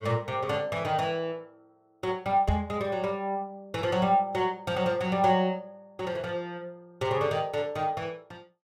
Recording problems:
microphone bump; at 2.5 s; peak +5 dB vs average level

